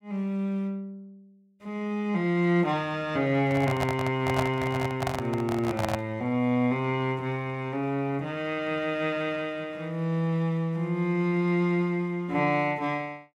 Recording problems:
microphone handling noise; from 3.5 to 6 s; peak +2 dB vs average level

